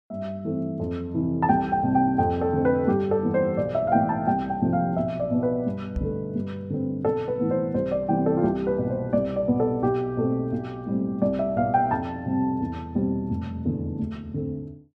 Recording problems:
microphone bump; at 6 s; peak -1 dB vs average level

